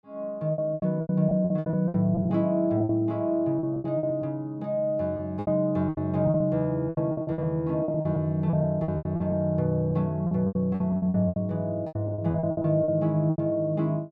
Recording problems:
packet loss; 17% of the sound replaced, filled with repeated pitch periods

